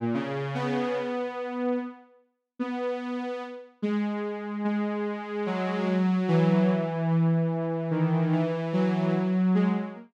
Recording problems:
none

